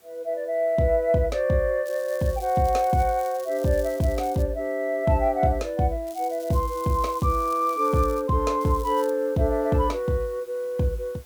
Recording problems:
hiss; slope -2 dB per octave, SNR 30 dB
crackling; from 2 to 4.5 s, from 6 to 8 s and at 8.5 s; loose cable, SNR 21 dB

